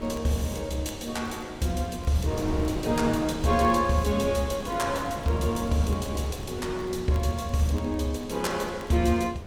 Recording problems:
hum; 50 Hz, harmonics up to 1.6 kHz, SNR 26 dB
wind noise; below 470 Hz, SNR 11 dB
crackling; vinyl, SNR 28 dB

